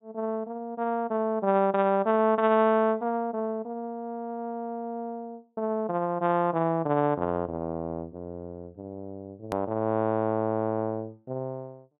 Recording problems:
low-pass filter; nothing above 4 kHz
edit click; at 9.5 s

